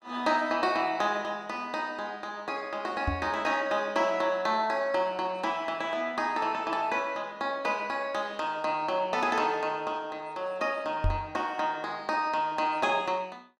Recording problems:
microphone thump; at 3 s and at 11 s; peak +4 dB vs average level

